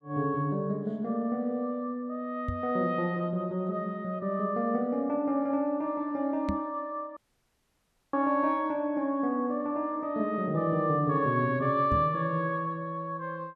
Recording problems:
knock on the microphone; at 2.5 s, at 6.5 s and at 12 s; peak +1 dB vs average level
audio cutting out; at 7 s for 1 s

